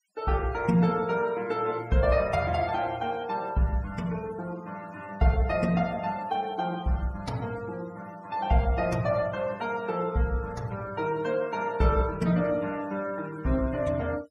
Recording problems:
noise reduction artefacts; signal-to-artefact ratio 22 dB

